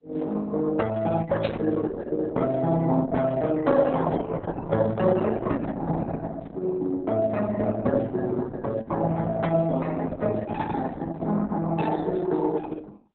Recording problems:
lossy codec; Opus, then Opus, log-spectral distance 3 dB, nothing above 4 kHz
static burst; at 1.5 s; peak -6 dB vs average level

